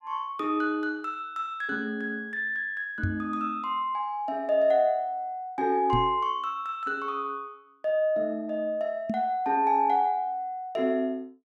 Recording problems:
microphone thump; at 3 s, at 6 s and at 9 s; peak +2 dB vs average level

